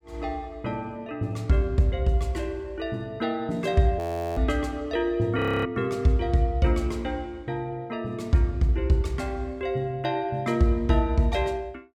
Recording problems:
audio freezing; at 4 s and at 5.5 s

